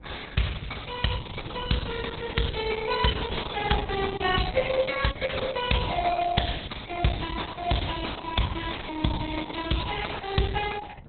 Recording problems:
codec artefacts; Opus, log-spectral distance 9 dB, nothing above 4.1 kHz
wind on the microphone; below 310 Hz, SNR 17 dB

